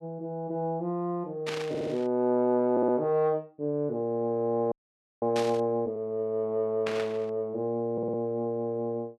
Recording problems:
burst of static; at 1.5 s, at 5.5 s and at 7 s; peak -2 dB vs average level
stutter; at 1.5 s, at 2.5 s and at 8 s
frozen audio; at 4.5 s for 0.5 s

